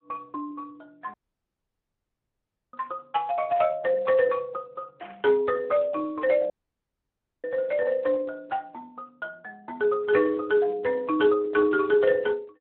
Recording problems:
telephone audio; 260 Hz to 3.1 kHz, Speex
dropout; at 1 s for 1.5 s and at 6.5 s for 1 s
static burst; at 3.5 s, at 5 s and at 8.5 s; peak -17 dB vs average level

